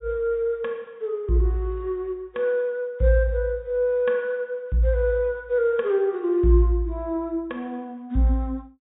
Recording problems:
treble cut off; nothing above 4 kHz

